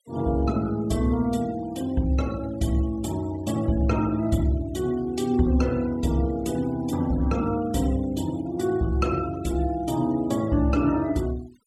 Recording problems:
noise reduction artefacts; signal-to-artefact ratio 22 dB

